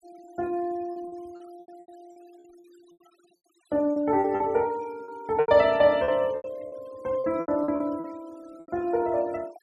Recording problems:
denoising artefacts; signal-to-artefact ratio 28 dB
lost packets; 13% of the sound replaced, filled with repeated pitch periods

